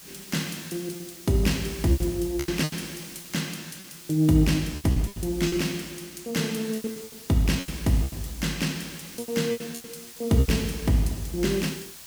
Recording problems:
background hiss; slope +1 dB per octave, SNR 15 dB
lost packets; 12% of the sound replaced, filled with repeated pitch periods

